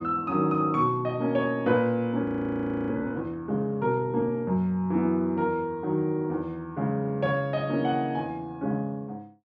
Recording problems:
audio freezing; at 2 s for 0.5 s

